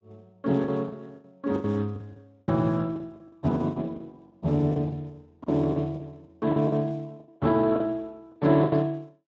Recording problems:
lossy codec; Speex, log-spectral distance 2 dB, nothing above 7.3 kHz
packet loss; 14% of the sound replaced, filled with the last packet

